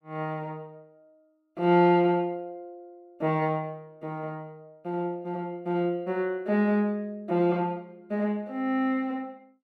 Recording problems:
none

